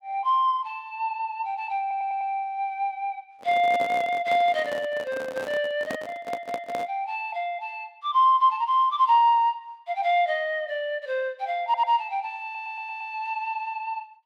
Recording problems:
stutter; 4 times, first at 2 s
handling noise; from 3.5 to 7 s; peak -3 dB vs average level

